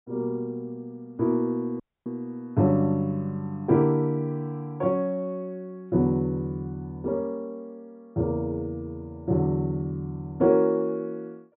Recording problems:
treble missing; nothing above 4 kHz
dropout; at 2 s

